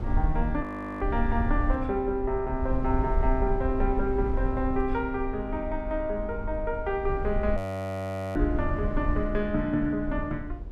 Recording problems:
rumble; below 68 Hz, SNR 4 dB
audio freezing; at 0.5 s and at 7.5 s for 1 s

